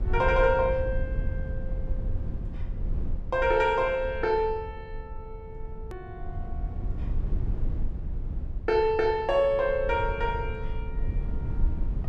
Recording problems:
low-frequency rumble; below 78 Hz, SNR 9 dB
click at an edit; at 6 s

